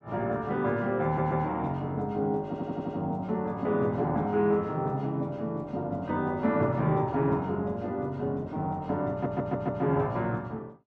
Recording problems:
audio stuttering; at 1 s, at 2.5 s and at 9 s

